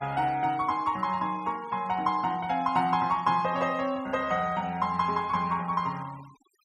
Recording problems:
noise reduction artefacts; signal-to-artefact ratio 23 dB

